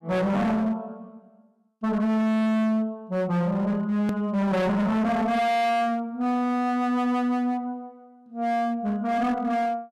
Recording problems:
distortion; hard clipping, signal-to-distortion ratio 7 dB
edit click; at 4 s

